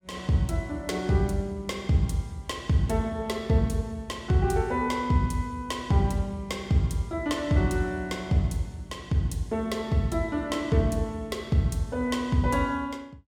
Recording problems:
none

